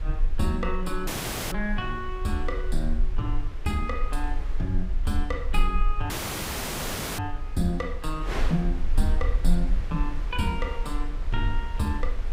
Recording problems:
rumble; below 38 Hz, strongest tone 20 Hz, SNR 1 dB
wind noise; below 1.9 kHz, SNR 13 dB
dropout; at 1 s and at 6 s for 1 s

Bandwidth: 15.5 kHz